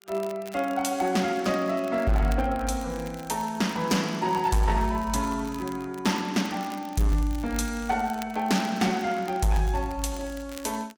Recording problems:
lossy compression; Vorbis, log-spectral distance 2 dB, nothing above 15.5 kHz
distorted audio; hard clipping, signal-to-distortion ratio 10 dB
crackling; vinyl, SNR 21 dB

